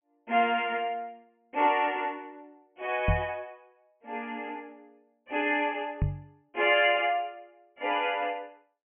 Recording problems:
low-pass filter; nothing above 3 kHz
microphone bump; at 3 s and at 6 s; peak +5 dB vs average level

